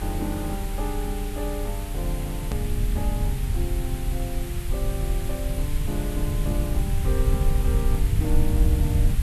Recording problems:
background hiss; SNR 6 dB
low-frequency rumble; below 80 Hz, SNR -6 dB
click at an edit; at 2.5 s

